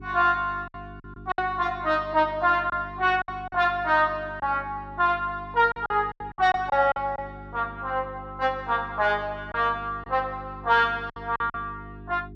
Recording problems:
hum; 50 Hz, harmonics up to 400 Hz, SNR 18 dB
lost packets; 6% of the sound replaced, filled with silence

